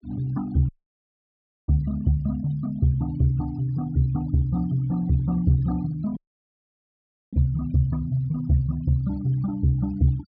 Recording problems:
treble missing; nothing above 5.5 kHz
noise reduction artefacts; signal-to-artefact ratio 26 dB
audio cutting out; at 0.5 s for 1 s and at 6 s for 1 s

